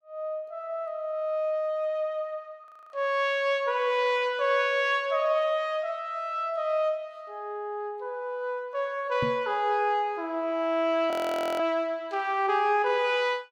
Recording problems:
frozen audio; at 2.5 s and at 11 s
microphone bump; at 9 s; peak -1 dB vs average level

